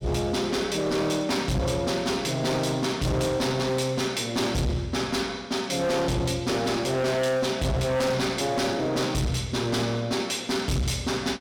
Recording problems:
distorted audio; hard clipping, signal-to-distortion ratio 7 dB

